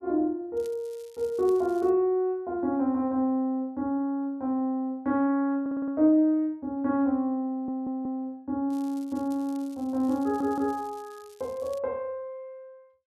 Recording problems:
crackle; from 0.5 to 2 s and from 8.5 to 12 s; loose cable, SNR 27 dB
audio stuttering; at 5.5 s, at 7.5 s and at 10 s

